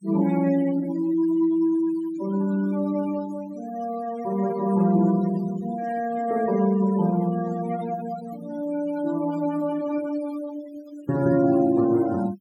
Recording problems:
denoising artefacts; signal-to-artefact ratio 19 dB

